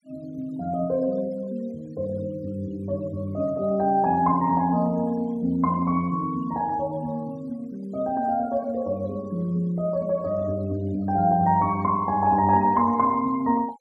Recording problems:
noise reduction artefacts; signal-to-artefact ratio 27 dB

